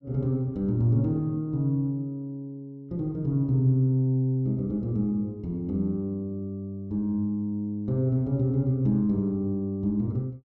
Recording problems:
none

